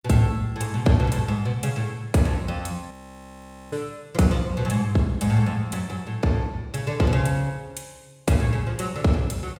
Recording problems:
audio freezing; at 3 s for 1 s

